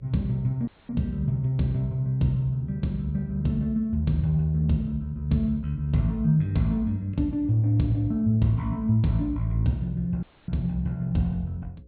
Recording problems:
treble cut off; nothing above 4.2 kHz
hum; 60 Hz, harmonics up to 540 Hz, SNR 27 dB
dropout; at 0.5 s and at 10 s

